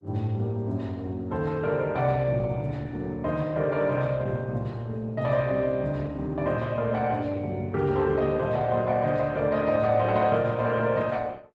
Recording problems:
codec artefacts; Opus, log-spectral distance 2 dB

